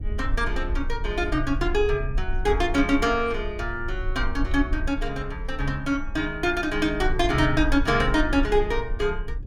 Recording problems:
rumble; below 54 Hz, SNR 7 dB

